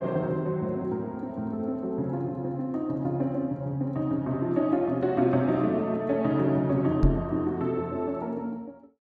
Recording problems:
microphone thump; at 7 s; peak +8 dB vs average level

